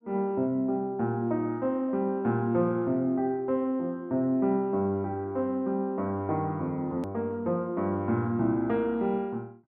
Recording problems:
hard cut with a click; at 7 s

